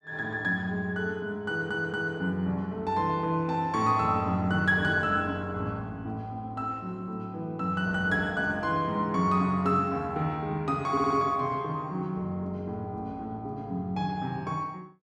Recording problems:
audio stuttering; at 1.5 s and at 11 s

